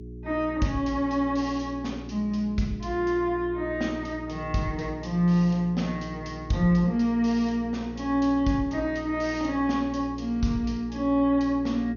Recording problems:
lossy compression; MP2, log-spectral distance 2 dB, nothing above 6.5 kHz
mains hum; 60 Hz, harmonics up to 420 Hz, SNR 14 dB

